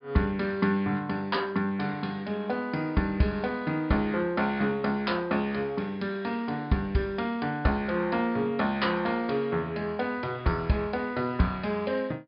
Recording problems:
treble cut off; nothing above 5.1 kHz

